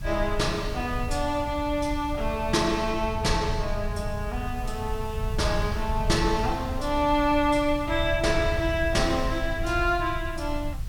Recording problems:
hiss; slope -2 dB per octave, SNR 23 dB
rumble; below 90 Hz, SNR 7 dB

